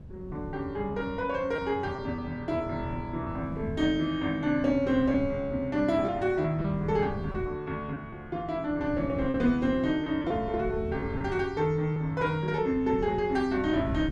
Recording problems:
wind on the microphone; below 180 Hz, SNR 13 dB
packet loss; 3% of the sound replaced, filled with repeated pitch periods

